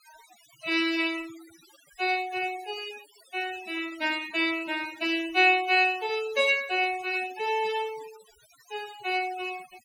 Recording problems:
noise reduction artefacts; signal-to-artefact ratio 18 dB

